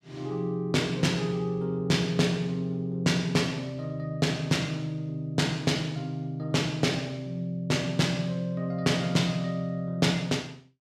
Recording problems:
none

